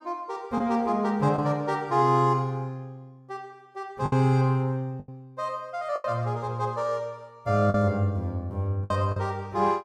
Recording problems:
packet loss; 4% of the sound replaced, filled with the last packet

